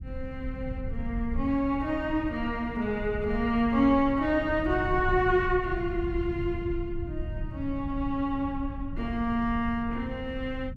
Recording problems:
low-frequency rumble; below 100 Hz, SNR 9 dB

